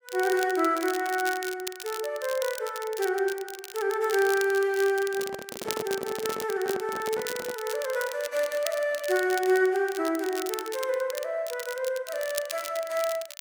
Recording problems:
crackle; vinyl, SNR 11 dB
handling noise; from 5 to 7.5 s; peak -3 dB vs average level

